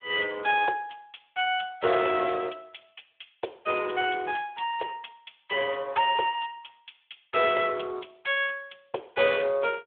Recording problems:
phone line; 340 Hz to 3.7 kHz, Speex

